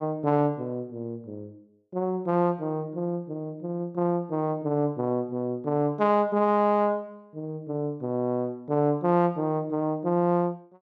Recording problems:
none

